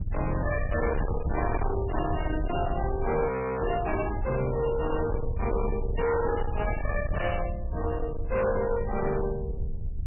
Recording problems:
codec artefacts; MP3, log-spectral distance 3 dB, nothing above 2.4 kHz
distortion; hard clipping, signal-to-distortion ratio 7 dB
rumble; below 120 Hz, SNR 4 dB
audio freezing; at 3.5 s
static burst; at 4 s and at 6.5 s; peak -18 dB vs average level

